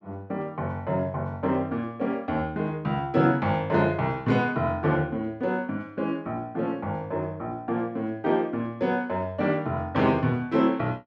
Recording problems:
none

